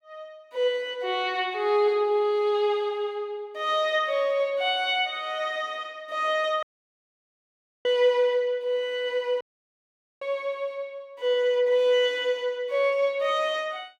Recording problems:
dropout; at 6.5 s for 1 s and at 9.5 s for 1 s

